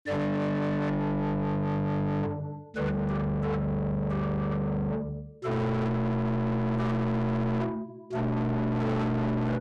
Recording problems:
distorted audio; soft clipping, signal-to-distortion ratio 6 dB

